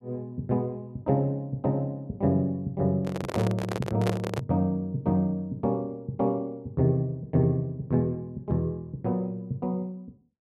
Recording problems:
handling noise; from 3 to 4.5 s; peak +2 dB vs average level

